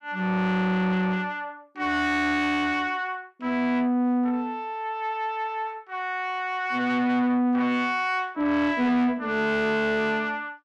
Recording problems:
distorted audio; soft clipping, signal-to-distortion ratio 11 dB

